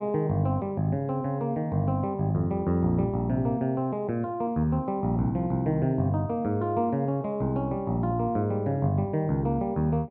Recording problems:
none

